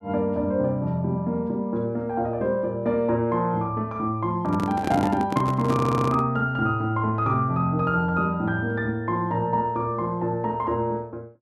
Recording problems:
microphone handling noise; from 4.5 to 6 s; peak +1 dB vs average level
stutter; at 5.5 s

